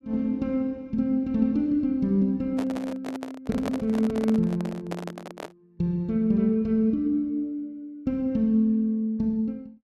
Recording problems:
handling noise; from 2.5 to 5.5 s; peak -3 dB vs average level

